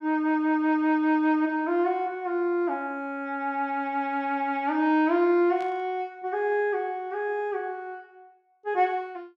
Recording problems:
static burst; at 5.5 s; peak -15 dB vs average level

